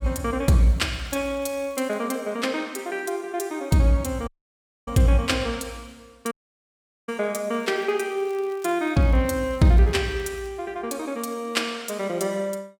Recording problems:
crackle; from 0.5 to 2 s and from 7.5 to 10 s; loose cable, SNR 30 dB
dropout; at 4.5 s for 0.5 s and at 6.5 s for 1 s

